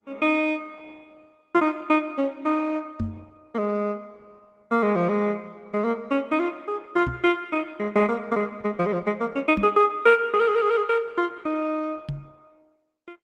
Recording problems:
codec artefacts; Opus, log-spectral distance 3 dB
knock on the microphone; 4 times, first at 3 s; peak 0 dB vs average level

